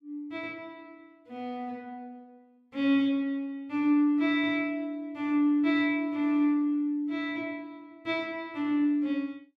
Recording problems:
none

